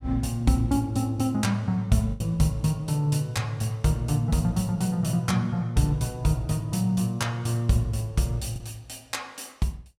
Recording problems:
packet loss; 1.3% of the sound replaced, filled with the last packet

